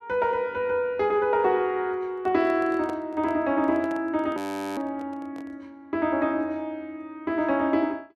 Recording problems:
handling noise; from 2 to 5.5 s; peak -8 dB vs average level
frozen audio; at 4.5 s

